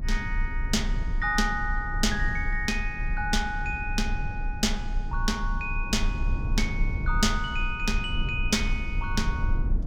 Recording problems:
low-frequency rumble; below 60 Hz, strongest tone 30 Hz, SNR 3 dB

